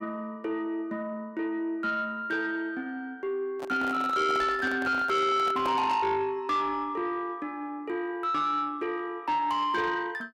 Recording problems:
distortion; soft clipping, signal-to-distortion ratio 11 dB
handling noise; from 3.5 to 6 s; peak -2 dB vs average level

